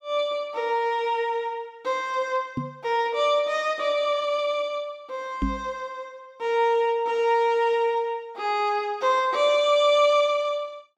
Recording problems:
microphone bump; at 2.5 s and at 5.5 s; peak +1 dB vs average level

